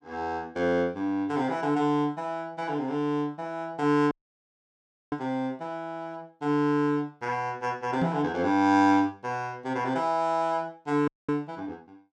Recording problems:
dropout; at 4 s for 1 s and at 11 s
microphone bump; at 8 s; peak +2 dB vs average level

